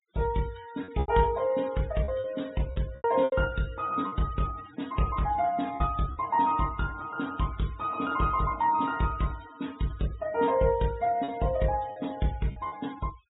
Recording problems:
low-pass filter; nothing above 4 kHz
denoising artefacts; signal-to-artefact ratio 20 dB
lost packets; 5% of the sound replaced, filled with repeated pitch periods

